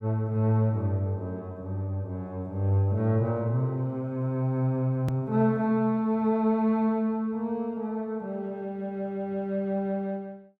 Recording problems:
click at an edit; at 5 s

